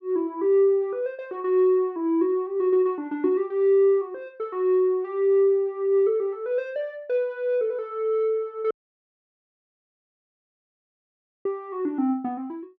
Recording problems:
audio cutting out; at 8.5 s for 2.5 s

